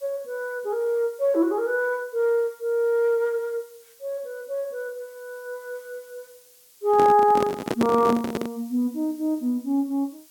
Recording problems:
background hiss; slope +2 dB per octave, SNR 27 dB
handling noise; from 7 to 8.5 s; peak +4 dB vs average level

